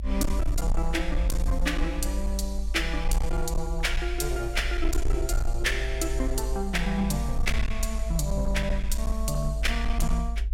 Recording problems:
distortion; hard clipping, uneven, signal-to-distortion ratio 11 dB
rumble; below 52 Hz, SNR 1 dB

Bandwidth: 16 kHz